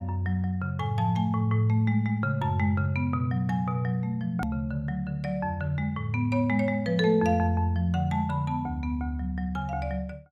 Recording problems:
click at an edit; at 4.5 s

